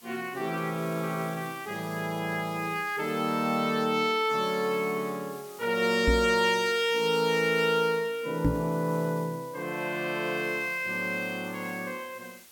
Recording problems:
hiss; slope +1 dB per octave, SNR 20 dB
knock on the microphone; at 6 s and at 8.5 s; peak +5 dB vs average level

